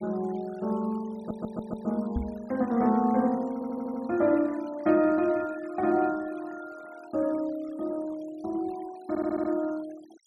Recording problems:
noise reduction artefacts; signal-to-artefact ratio 23 dB
stutter; at 1 s, at 3.5 s and at 9 s
microphone bump; at 2 s; peak +2 dB vs average level

